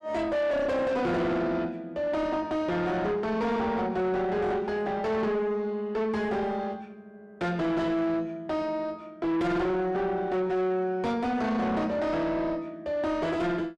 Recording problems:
distorted audio; soft clipping, signal-to-distortion ratio 8 dB

